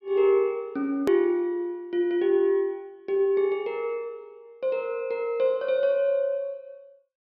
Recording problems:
treble cut off; nothing above 5.5 kHz
edit click; at 1 s

